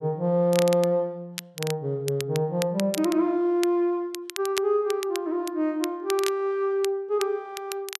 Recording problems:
crackle; vinyl, SNR 12 dB

